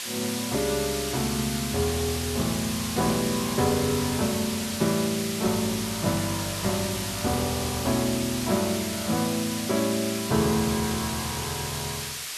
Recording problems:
background hiss; slope +3 dB per octave, SNR 4 dB

